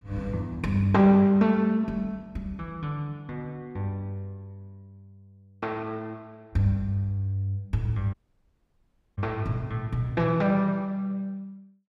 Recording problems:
audio cutting out; at 8 s for 1 s

